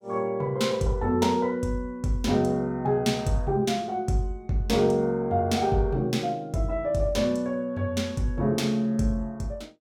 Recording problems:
none

